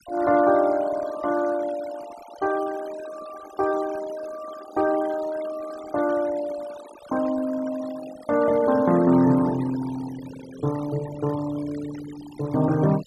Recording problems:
denoising artefacts; signal-to-artefact ratio 17 dB

